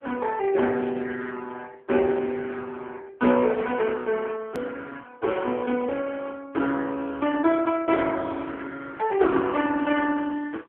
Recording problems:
phone line; 190 Hz to 3.5 kHz, AMR-NB
click at an edit; at 4.5 s

